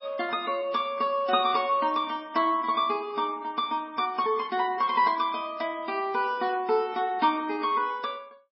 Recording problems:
lossy compression; MP3, log-spectral distance 2 dB, nothing above 5.3 kHz

